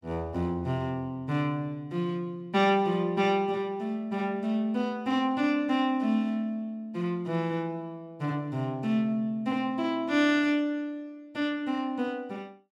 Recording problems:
none

